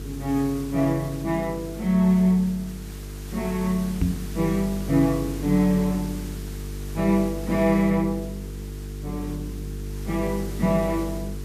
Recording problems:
hum; 50 Hz, harmonics up to 450 Hz, SNR 11 dB
background hiss; slope -1 dB per octave, SNR 19 dB
knock on the microphone; at 4 s; peak +5 dB vs average level

